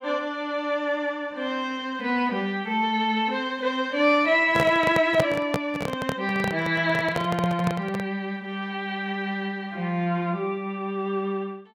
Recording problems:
microphone handling noise; from 4.5 to 8 s; peak +4 dB vs average level

